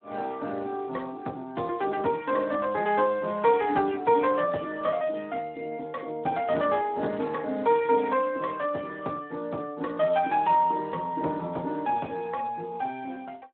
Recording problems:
phone line; 190 Hz to 3.6 kHz, Speex

